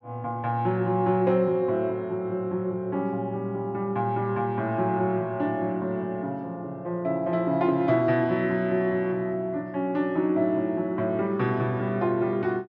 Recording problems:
none

